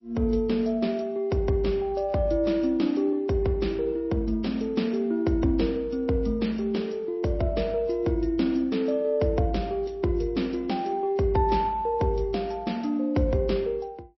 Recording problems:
lossy codec; MP3, log-spectral distance 2 dB, nothing above 5.7 kHz

